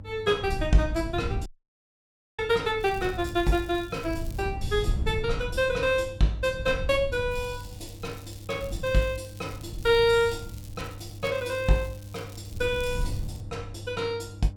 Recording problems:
hum; 50 Hz, harmonics up to 600 Hz, SNR 17 dB
wind noise; below 100 Hz, SNR 10 dB
audio cutting out; at 1.5 s for 1 s
crackling; from 3 to 4.5 s and from 7.5 to 13 s; loose cable, SNR 23 dB

